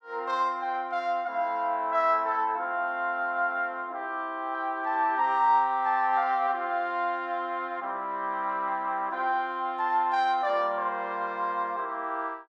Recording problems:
none

